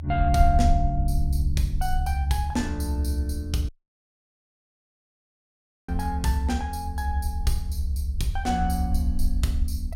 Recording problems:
low-frequency rumble; below 76 Hz, SNR -1 dB
dropout; at 3.5 s for 2 s

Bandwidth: 16.5 kHz